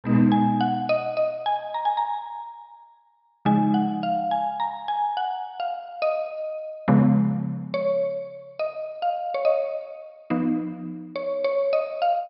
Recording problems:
low-pass filter; nothing above 5.5 kHz

